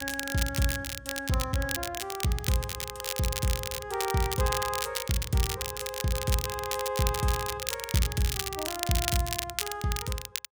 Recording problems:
crackle; vinyl, SNR 3 dB

